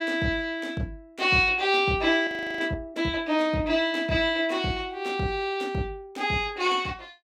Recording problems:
audio freezing; at 2.5 s

